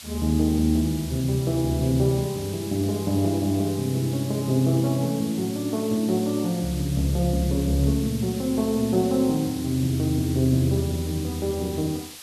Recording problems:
background hiss; slope +3 dB per octave, SNR 14 dB

